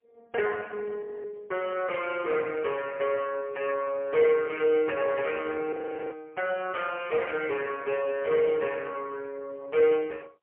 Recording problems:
phone line; 340 Hz to 3.1 kHz, AMR-NB, then MP3
frozen audio; at 1 s and at 5.5 s

